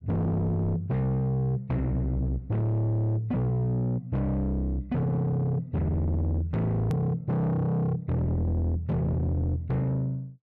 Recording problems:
distortion; soft clipping, signal-to-distortion ratio 7 dB
click at an edit; at 7 s

